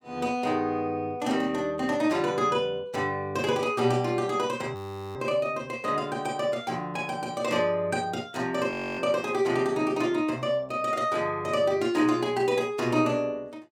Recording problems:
frozen audio; at 5 s and at 8.5 s

